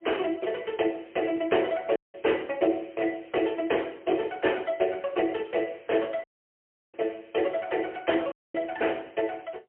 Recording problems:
telephone audio; 280 Hz to 3.2 kHz, AMR-NB, then MP3
audio cutting out; at 2 s, at 6 s for 0.5 s and at 8.5 s

